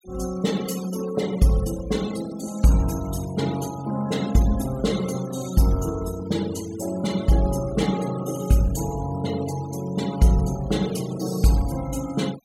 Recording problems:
noise reduction artefacts; signal-to-artefact ratio 16 dB

